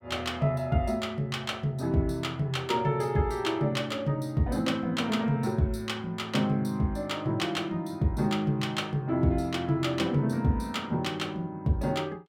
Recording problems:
none

